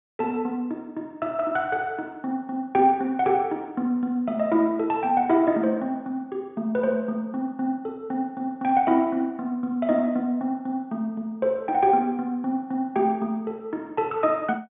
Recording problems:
treble cut off; nothing above 3.6 kHz

